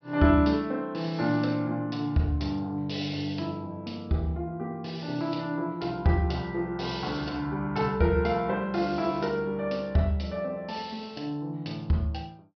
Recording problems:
low-pass filter; nothing above 5.5 kHz

